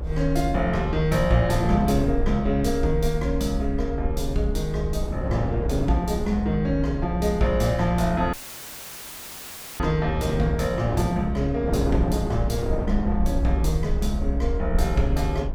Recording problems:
rumble; below 62 Hz, SNR 5 dB
wind noise; below 440 Hz, SNR 8 dB
dropout; at 8.5 s for 1.5 s; filled with static

